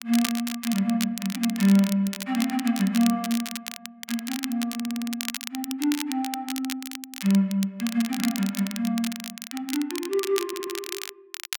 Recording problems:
crackling; vinyl, SNR 8 dB
audio stuttering; at 5 s and at 10 s

